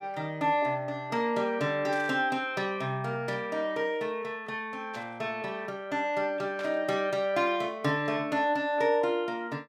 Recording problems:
burst of static; at 2 s, at 5 s and at 6.5 s; peak -10 dB vs average level

